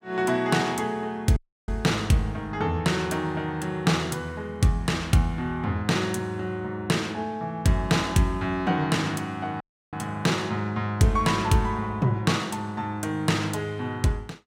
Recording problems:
dropout; at 1.5 s and at 9.5 s

